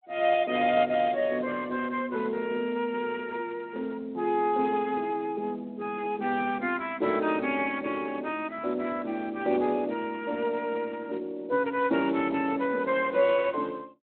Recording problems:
telephone audio; 220 Hz to 3.7 kHz, Speex

